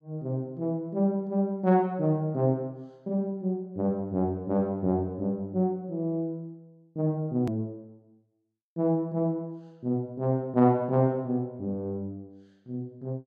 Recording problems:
hard cut with a click; at 7.5 s

